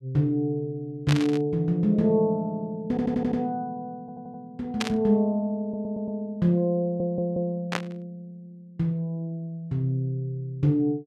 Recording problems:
burst of static; at 1 s, at 5 s and at 7.5 s; peak +2 dB vs average level
stutter; 4 times, first at 3 s

